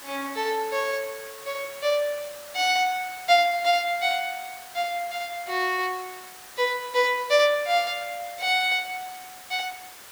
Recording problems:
background hiss; SNR 17 dB

